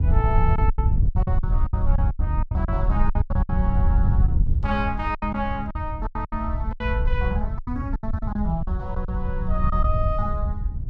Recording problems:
wind noise; below 86 Hz, SNR -5 dB
lost packets; 13% of the sound replaced, filled with silence

